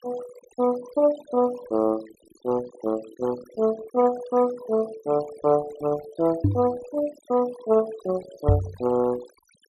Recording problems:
noise reduction artefacts; signal-to-artefact ratio 18 dB
microphone thump; at 6.5 s and at 8.5 s; peak +8 dB vs average level

